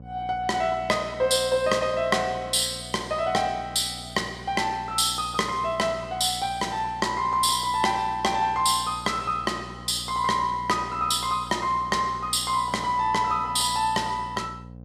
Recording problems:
hum; 60 Hz, harmonics up to 780 Hz, SNR 18 dB

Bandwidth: 14 kHz